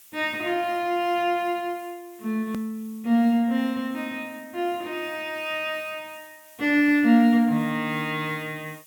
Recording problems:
hiss; slope +2 dB per octave, SNR 25 dB
hard cut with a click; at 2.5 s

